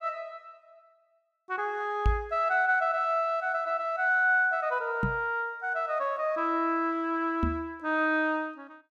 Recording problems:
microphone thump; at 2 s, at 5 s and at 7.5 s; peak +4 dB vs average level

